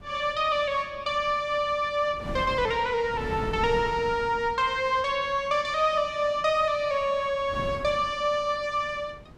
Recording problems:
wind noise; below 350 Hz, SNR 16 dB

